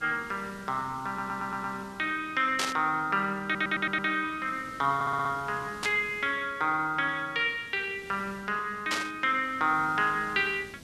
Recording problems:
background hiss; SNR 21 dB
stutter; at 1 s, at 3.5 s and at 5 s
static burst; at 2.5 s, at 6 s and at 9 s; peak +3 dB vs average level

